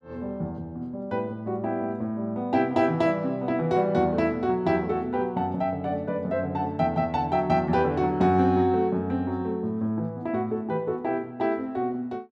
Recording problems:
none

